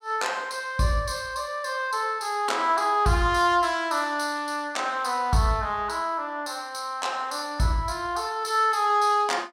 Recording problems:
none

